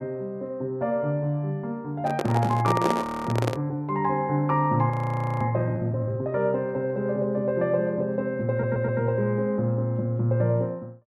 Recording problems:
microphone handling noise; from 2 to 3.5 s; peak +4 dB vs average level
frozen audio; at 3 s and at 5 s for 0.5 s
stutter; at 8.5 s

